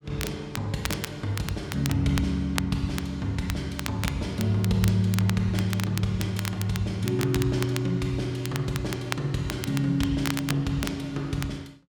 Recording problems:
crackle; vinyl, SNR 10 dB

